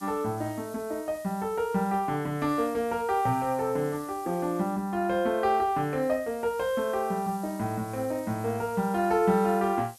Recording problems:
background hiss; slope +4 dB per octave, SNR 21 dB

